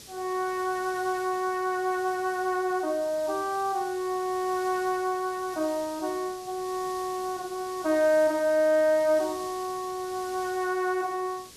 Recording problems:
background hiss; SNR 17 dB

